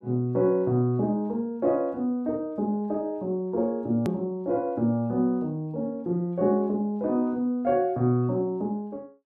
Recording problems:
edit click; at 4 s

